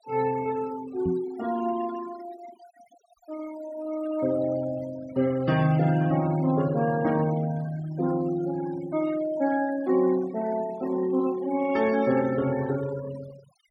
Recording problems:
noise reduction artefacts; signal-to-artefact ratio 17 dB
microphone thump; at 1 s; peak 0 dB vs average level

